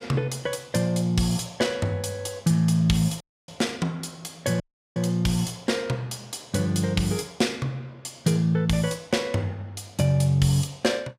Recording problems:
audio cutting out; at 3 s and at 4.5 s

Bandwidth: 15.5 kHz